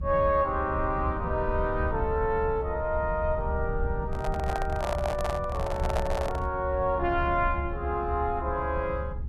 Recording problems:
low-frequency rumble; below 92 Hz, SNR 6 dB
handling noise; from 4 to 6.5 s; peak +1 dB vs average level

